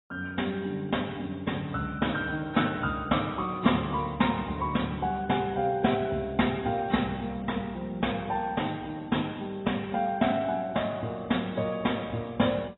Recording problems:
lossy codec; AAC, log-spectral distance 6 dB, nothing above 3.9 kHz

